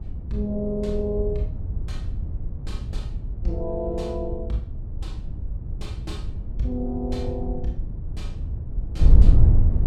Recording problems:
wind noise; below 78 Hz, SNR -3 dB

